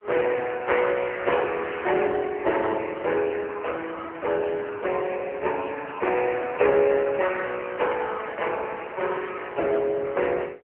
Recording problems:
telephone audio; 300 Hz to 3 kHz, AMR-NB

